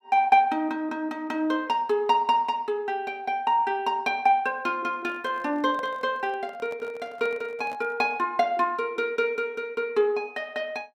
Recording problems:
microphone handling noise; from 5 to 8 s; peak -12 dB vs average level

